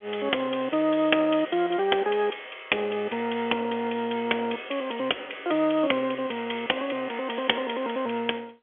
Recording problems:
telephone audio; 280 Hz to 3.4 kHz, G.711

